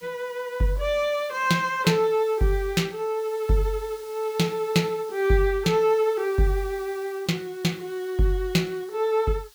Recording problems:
background hiss; slope +3 dB per octave, SNR 23 dB

